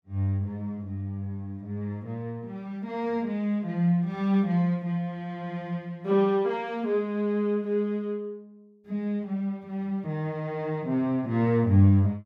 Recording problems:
none

